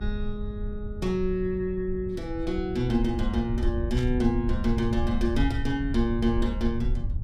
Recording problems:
hum; 60 Hz, harmonics up to 1.2 kHz, SNR 25 dB
low-frequency rumble; below 74 Hz, SNR 4 dB
burst of static; at 4 s; peak -9 dB vs average level

